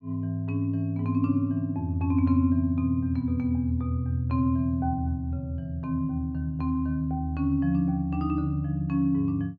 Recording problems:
treble cut off; nothing above 8 kHz

